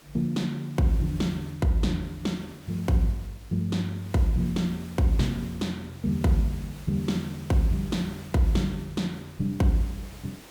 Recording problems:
background hiss; slope -3 dB per octave, SNR 21 dB

